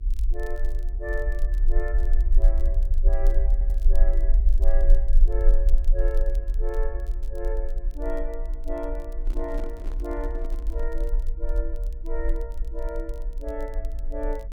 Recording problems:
hum; 60 Hz, harmonics up to 420 Hz, SNR 19 dB
rumble; below 40 Hz, strongest tone 22 Hz, SNR -9 dB
crackle; vinyl, SNR 23 dB
stutter; at 3.5 s
microphone handling noise; from 9 to 11 s; peak -2 dB vs average level

